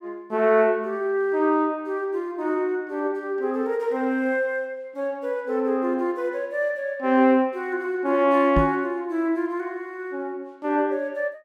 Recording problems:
knock on the microphone; at 8.5 s; peak +3 dB vs average level

